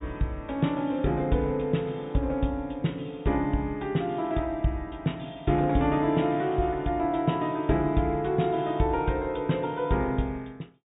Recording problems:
low-pass filter; nothing above 4 kHz

